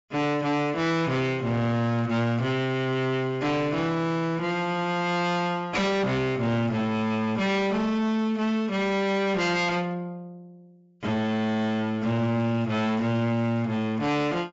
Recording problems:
low-pass filter; nothing above 8 kHz
distortion; hard clipping, signal-to-distortion ratio 7 dB

